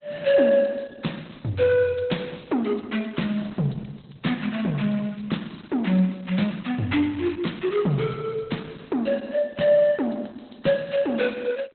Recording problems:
lossy compression; Opus, log-spectral distance 9 dB, nothing above 4 kHz

